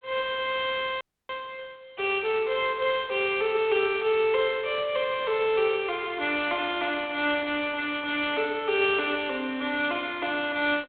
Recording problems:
telephone audio; 320 Hz to 3.6 kHz, G.726
audio freezing; at 1 s

